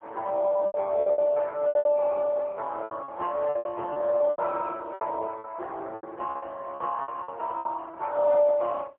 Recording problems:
phone line; 390 Hz to 2.8 kHz, AMR-NB, then MP3
packet loss; 14% of the sound replaced, filled with repeated pitch periods

